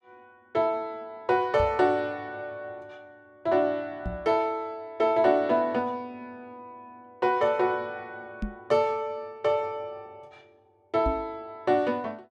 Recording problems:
knock on the microphone; 4 times, first at 1.5 s; peak -1 dB vs average level

